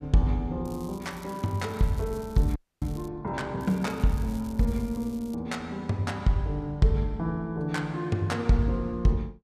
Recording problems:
crackle; from 0.5 to 3 s and from 3.5 to 5.5 s; loose cable, SNR 23 dB
frozen audio; at 2.5 s

